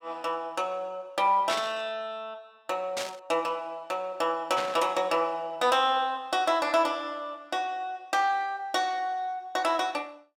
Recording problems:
static burst; at 1.5 s, at 3 s and at 4.5 s; peak 0 dB vs average level

